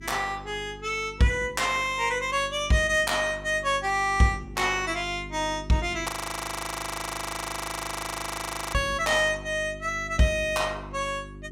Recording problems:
electrical hum; 50 Hz, harmonics up to 400 Hz, SNR 16 dB
audio freezing; at 6 s for 2.5 s

